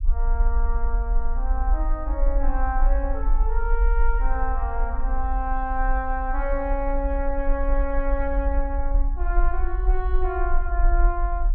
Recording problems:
low-frequency rumble; below 44 Hz, SNR -3 dB

